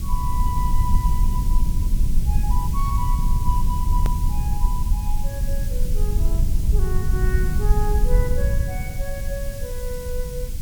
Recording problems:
background hiss; SNR 7 dB
rumble; below 64 Hz, SNR -9 dB
edit click; at 4 s

